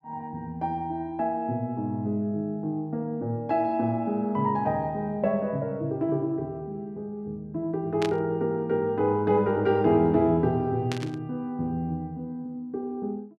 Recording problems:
static burst; at 8 s and at 11 s; peak -3 dB vs average level

